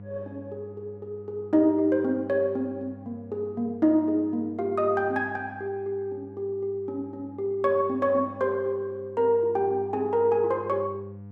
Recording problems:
hum; 50 Hz, harmonics up to 700 Hz, SNR 19 dB

